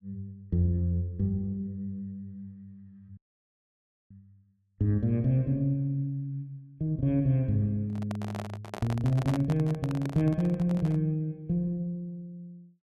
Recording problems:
audio cutting out; at 3 s for 1 s
microphone handling noise; from 8 to 11 s; peak -4 dB vs average level

